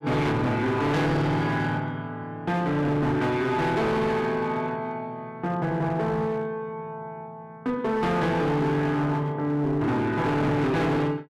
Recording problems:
distortion; hard clipping, uneven, signal-to-distortion ratio 8 dB

